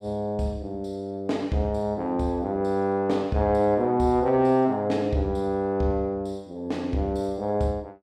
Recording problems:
none

